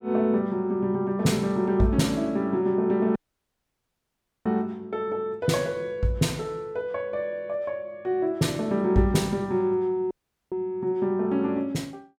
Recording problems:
audio cutting out; at 3 s for 1.5 s and at 10 s

